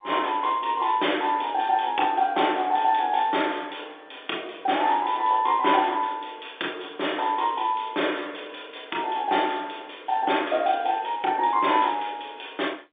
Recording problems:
phone line; 240 Hz to 3.7 kHz, G.711

